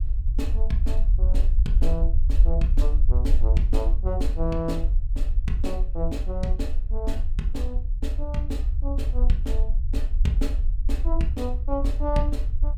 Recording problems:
rumble; below 52 Hz, SNR -6 dB

